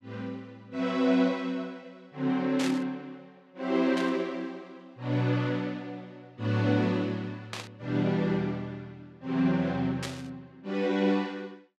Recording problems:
static burst; 4 times, first at 2.5 s; peak -2 dB vs average level

